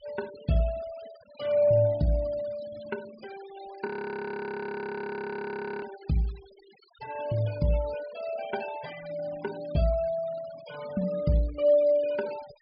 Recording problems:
treble missing; nothing above 5.1 kHz
denoising artefacts; signal-to-artefact ratio 20 dB
audio freezing; at 4 s for 2 s

